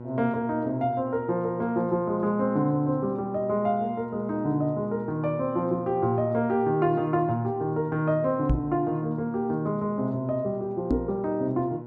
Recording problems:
mains hum; 60 Hz, harmonics up to 1.4 kHz, SNR 14 dB
knock on the microphone; at 8.5 s and at 11 s; peak +5 dB vs average level

